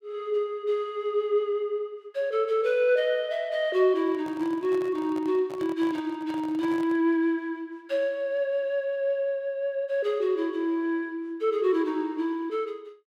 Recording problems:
handling noise; from 4 to 7 s; peak -11 dB vs average level

